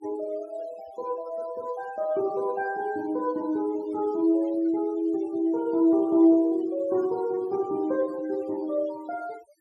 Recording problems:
denoising artefacts; signal-to-artefact ratio 23 dB

